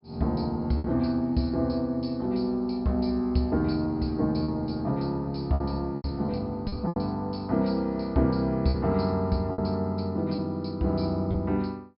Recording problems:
treble cut off; nothing above 5.5 kHz
packet loss; 5% of the sound replaced, filled with repeated pitch periods

